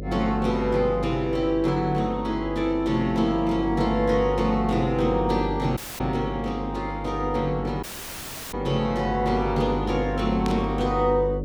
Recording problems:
hum; 50 Hz, harmonics up to 600 Hz, SNR 8 dB
audio cutting out; at 6 s and at 8 s for 0.5 s
burst of static; at 10 s; peak -7 dB vs average level

